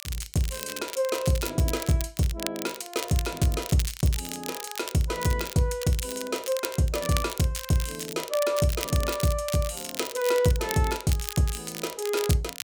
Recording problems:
crackling; vinyl, SNR 9 dB

